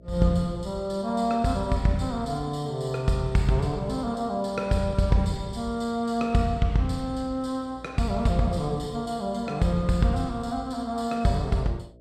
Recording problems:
mains hum; 60 Hz, harmonics up to 660 Hz, SNR 24 dB

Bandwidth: 14.5 kHz